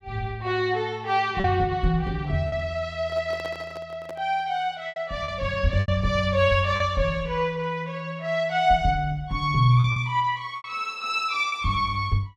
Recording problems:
packet loss; 4% of the sound replaced, filled with repeated pitch periods
microphone handling noise; from 3 to 4.5 s; peak -10 dB vs average level

